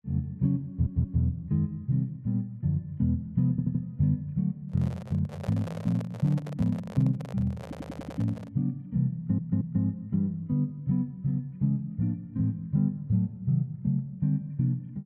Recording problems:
audio stuttering; 4 times, first at 0.5 s
handling noise; from 4.5 to 8.5 s; peak -8 dB vs average level

